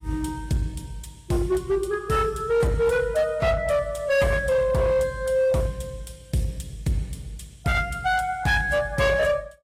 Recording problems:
lossy compression; AAC, log-spectral distance 2 dB, nothing above 15.1 kHz
distortion; hard clipping, signal-to-distortion ratio 10 dB

